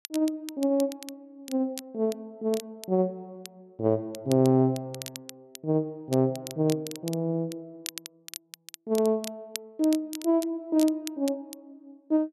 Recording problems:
crackling; vinyl, SNR 15 dB

